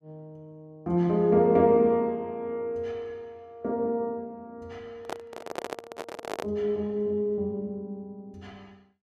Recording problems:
handling noise; from 5 to 6.5 s; peak -2 dB vs average level

